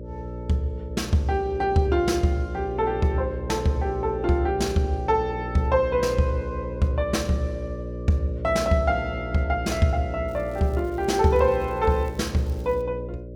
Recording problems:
hum; 60 Hz, harmonics up to 600 Hz, SNR 9 dB
crackling; from 10 to 13 s; loose cable, SNR 30 dB

